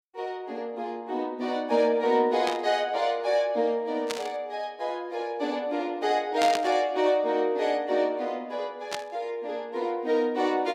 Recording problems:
burst of static; 4 times, first at 2.5 s; peak +1 dB vs average level

